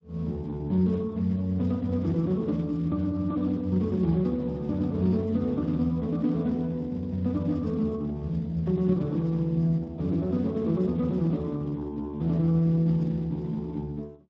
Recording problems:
lossy codec; AAC, then Speex, log-spectral distance 2 dB

